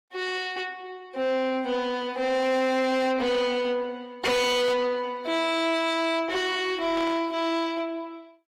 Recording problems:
lossy compression; Opus, log-spectral distance 2 dB, nothing above 18.9 kHz
distorted audio; soft clipping, signal-to-distortion ratio 5 dB
burst of static; at 7 s; peak -9 dB vs average level

